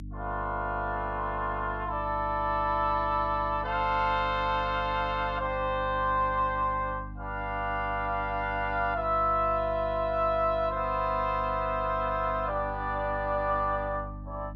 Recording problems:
mains hum; 50 Hz, harmonics up to 300 Hz, SNR 12 dB

